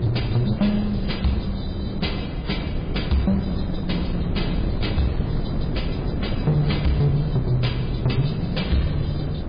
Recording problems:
lossy codec; MP3, log-spectral distance 4 dB, nothing above 4.8 kHz
distorted audio; hard clipping, uneven, signal-to-distortion ratio 11 dB
wind noise; below 240 Hz, SNR 3 dB

